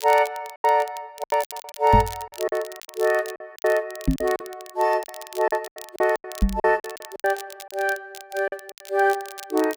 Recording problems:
crackle; vinyl, SNR 17 dB
lost packets; 14% of the sound replaced, filled with silence
knock on the microphone; at 2 s, at 4 s and at 6.5 s; peak +8 dB vs average level

